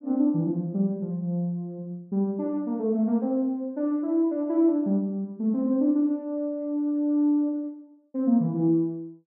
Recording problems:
none

